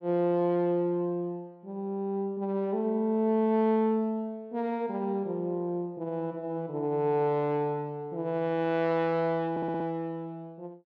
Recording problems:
audio stuttering; at 9.5 s

